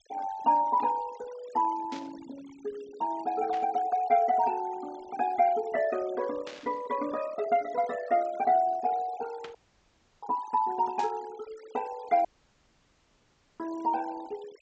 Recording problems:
treble cut off; nothing above 8 kHz
denoising artefacts; signal-to-artefact ratio 19 dB
burst of static; 5 times, first at 2 s; peak -10 dB vs average level
audio cutting out; at 9.5 s for 0.5 s and at 12 s for 1.5 s

